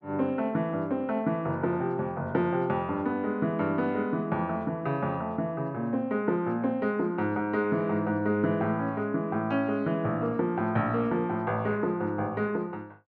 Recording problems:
none

